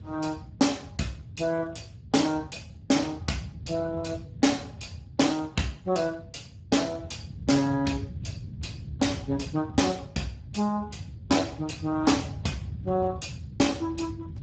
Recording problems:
codec artefacts; Speex, log-spectral distance 4 dB, nothing above 7.6 kHz
wind noise; below 160 Hz, SNR 13 dB

